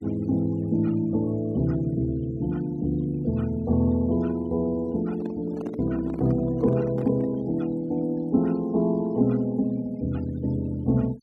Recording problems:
denoising artefacts; signal-to-artefact ratio 26 dB
microphone handling noise; from 5 to 7.5 s; peak -7 dB vs average level

